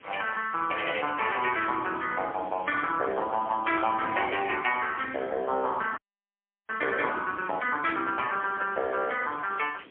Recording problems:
telephone audio; 240 Hz to 3.3 kHz, AMR-NB, then MP3
background hiss; SNR 27 dB
wind on the microphone; below 630 Hz, SNR 21 dB
frozen audio; at 6 s for 0.5 s

